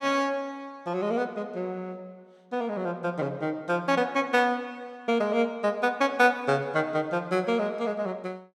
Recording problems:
none

